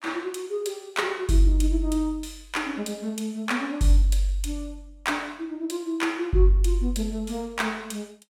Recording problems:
none

